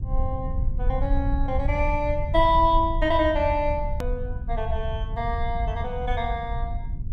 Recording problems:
rumble; below 78 Hz, SNR 4 dB
edit click; at 4 s

